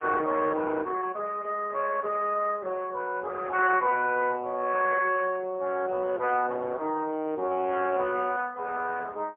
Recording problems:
phone line; 320 Hz to 3.3 kHz, AMR-NB, then MP3

